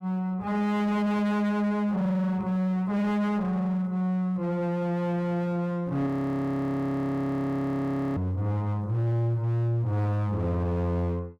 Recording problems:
distortion; hard clipping, signal-to-distortion ratio 8 dB
audio freezing; at 6 s for 2 s

